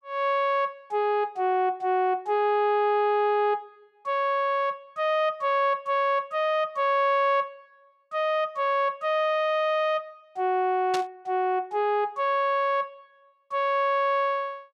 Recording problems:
static burst; at 11 s; peak -3 dB vs average level

